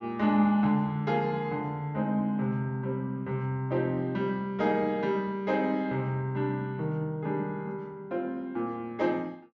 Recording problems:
treble missing; nothing above 7.2 kHz

